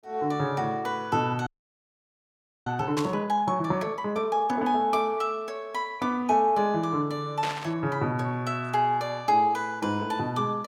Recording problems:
frozen audio; at 1.5 s for 1 s
burst of static; at 3 s and at 7.5 s; peak -2 dB vs average level

